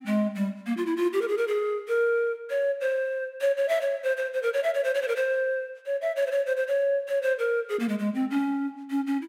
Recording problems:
none

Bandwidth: 16 kHz